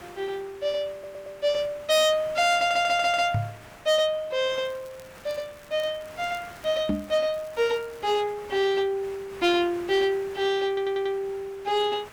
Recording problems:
distortion; hard clipping, uneven, signal-to-distortion ratio 11 dB
background hiss; SNR 21 dB
stutter; at 1 s, at 2.5 s and at 11 s
microphone thump; at 3.5 s and at 7 s; peak +3 dB vs average level
crackling; from 4.5 to 7 s and at 7.5 s; loose cable, SNR 29 dB

